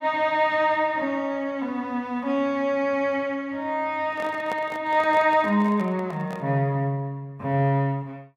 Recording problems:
handling noise; from 4 to 6.5 s; peak -5 dB vs average level

